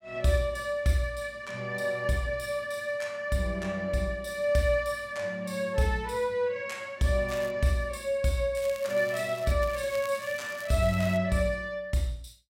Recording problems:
crackle; at 7.5 s, at 8.5 s and from 9.5 to 11 s; loose cable, SNR 18 dB

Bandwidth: 16 kHz